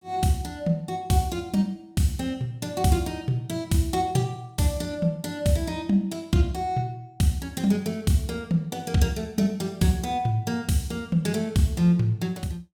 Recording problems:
none

